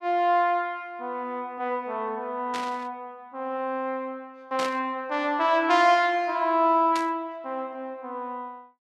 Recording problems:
burst of static; at 2.5 s, at 4.5 s and at 7 s; peak -4 dB vs average level

